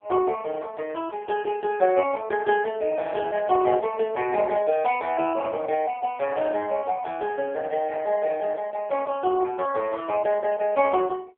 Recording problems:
phone line; 320 Hz to 2.9 kHz, AMR-NB

